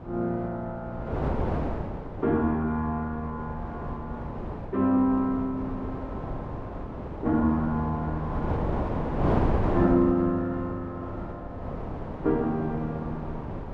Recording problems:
wind on the microphone; below 580 Hz, SNR 5 dB

